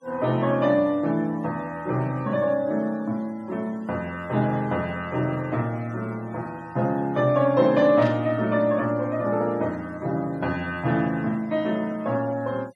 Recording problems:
denoising artefacts; signal-to-artefact ratio 27 dB
static burst; at 8 s; peak -11 dB vs average level

